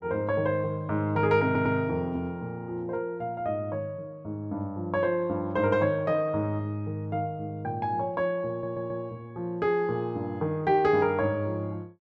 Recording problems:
stutter; at 1.5 s and at 8.5 s

